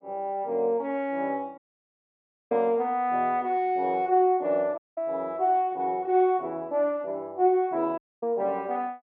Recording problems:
dropout; at 1.5 s for 1 s, at 5 s and at 8 s

